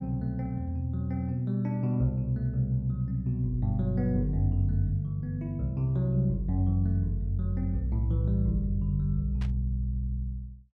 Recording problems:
static burst; at 9.5 s; peak -13 dB vs average level

